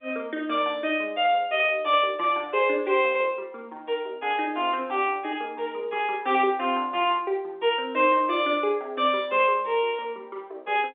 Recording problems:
telephone audio; 300 Hz to 3.6 kHz, G.711

